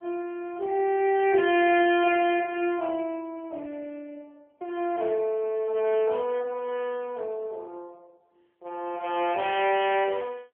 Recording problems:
telephone audio; 300 Hz to 3.3 kHz, AMR-NB

